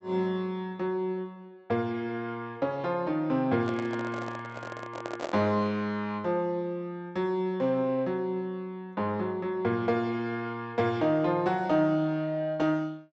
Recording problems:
treble cut off; nothing above 7.8 kHz
microphone handling noise; from 3.5 to 5.5 s; peak -1 dB vs average level

